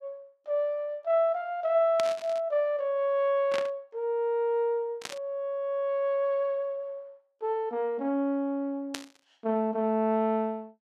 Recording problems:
static burst; 4 times, first at 2 s; peak -1 dB vs average level

